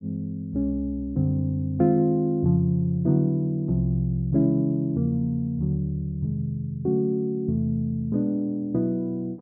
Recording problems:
none

